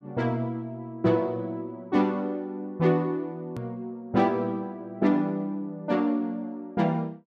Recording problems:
edit click; at 3.5 s

